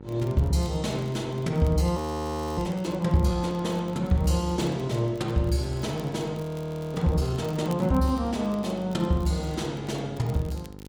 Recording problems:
electrical hum; 50 Hz, harmonics up to 1.4 kHz, SNR 17 dB
crackling; vinyl, SNR 26 dB
audio freezing; at 2 s for 0.5 s and at 6.5 s for 0.5 s

